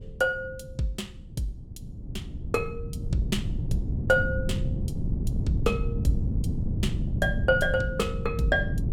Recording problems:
wind on the microphone; below 160 Hz, SNR 1 dB

